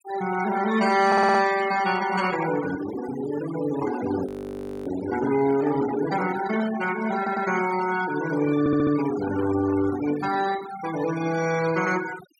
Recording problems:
noise reduction artefacts; signal-to-artefact ratio 12 dB
audio stuttering; at 1 s, at 7 s and at 8.5 s
frozen audio; at 4.5 s for 0.5 s

